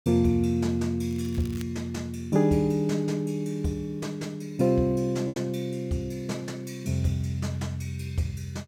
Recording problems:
packet loss; 0.9% of the sound replaced, filled with repeated pitch periods
crackling; at 1 s; loose cable, SNR 21 dB

